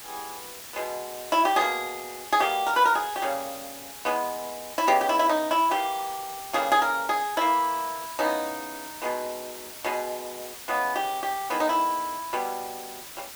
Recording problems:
hiss; slope 0 dB per octave, SNR 13 dB

